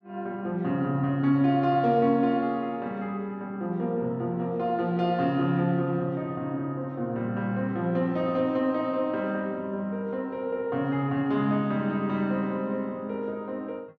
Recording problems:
none

